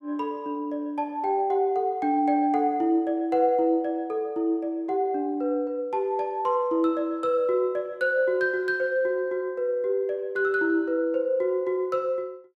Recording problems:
none

